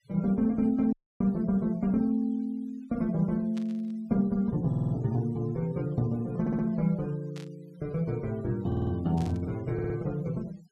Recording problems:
denoising artefacts; signal-to-artefact ratio 28 dB
dropout; at 1 s
static burst; at 3.5 s, at 7.5 s and at 9 s; peak -14 dB vs average level
stutter; 4 times, first at 4.5 s

